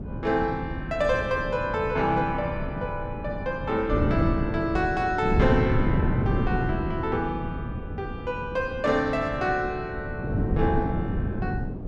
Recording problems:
wind noise; below 240 Hz, SNR 2 dB

